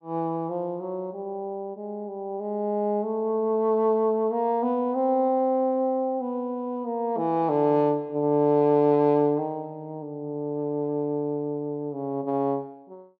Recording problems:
none

